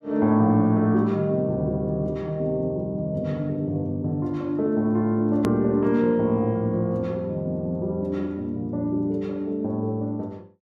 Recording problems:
click at an edit; at 5.5 s

